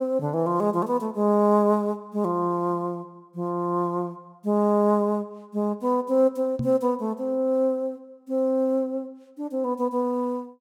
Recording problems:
microphone bump; at 6.5 s; peak 0 dB vs average level

